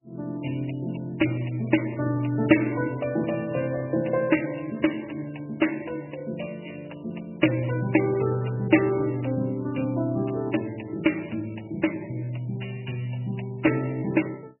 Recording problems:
lossy compression; MP3, log-spectral distance 9 dB, nothing above 2.9 kHz

